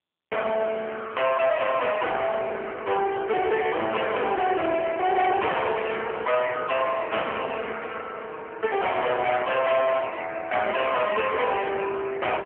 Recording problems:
telephone audio; 340 Hz to 3.4 kHz, AMR-NB
distorted audio; hard clipping, uneven, signal-to-distortion ratio 5 dB

